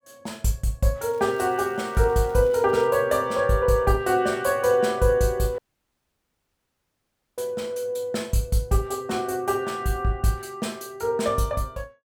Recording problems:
crackle; from 1 to 3 s; loose cable, SNR 29 dB
dropout; at 5.5 s for 2 s

